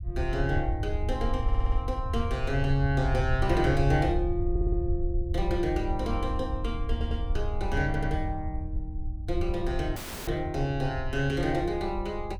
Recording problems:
low-frequency rumble; below 74 Hz, SNR 3 dB
stutter; 4 times, first at 1.5 s
audio cutting out; at 10 s

